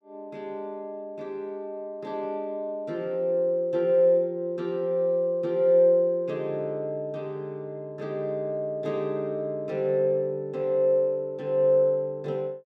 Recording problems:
none

